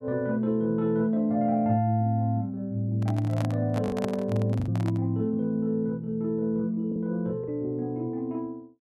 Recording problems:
lost packets; 2% of the sound replaced, filled with the last packet
microphone handling noise; from 3 to 5 s; peak -2 dB vs average level

